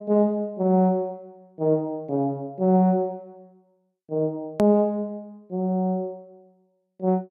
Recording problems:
edit click; at 4.5 s

